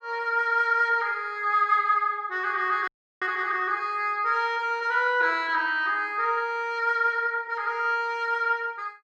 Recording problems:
frozen audio; at 3 s

